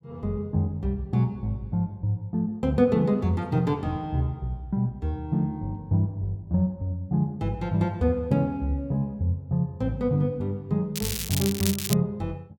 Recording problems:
crackle; at 11 s; loose cable, SNR 4 dB

